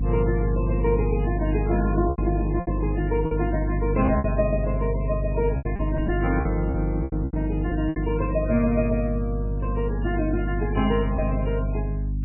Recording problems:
codec artefacts; MP3, log-spectral distance 2 dB, nothing above 2.6 kHz
electrical hum; 50 Hz, harmonics up to 300 Hz, SNR 1 dB
packet loss; 6% of the sound replaced, filled with repeated pitch periods

